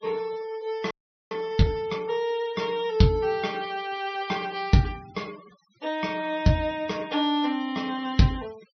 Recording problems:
low-pass filter; nothing above 6.1 kHz
noise reduction artefacts; signal-to-artefact ratio 22 dB
frozen audio; at 1 s

